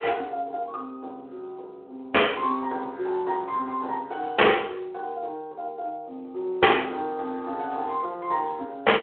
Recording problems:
phone line; 300 Hz to 3.3 kHz, Speex
distortion; hard clipping, signal-to-distortion ratio 12 dB

